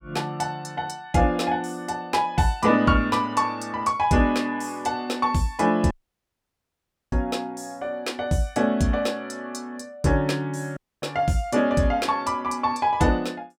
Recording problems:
audio cutting out; at 6 s for 1 s and at 11 s

